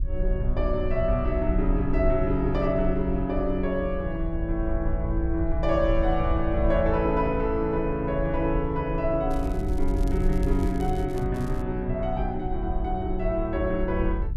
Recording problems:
wind on the microphone; below 62 Hz, SNR 4 dB
crackle; from 9.5 to 11 s and at 11 s; loose cable, SNR 24 dB

